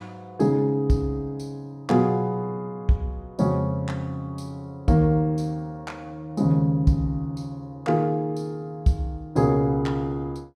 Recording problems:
none

